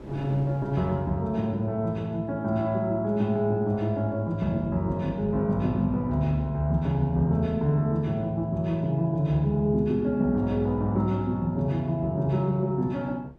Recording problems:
wind on the microphone; below 390 Hz, SNR 24 dB

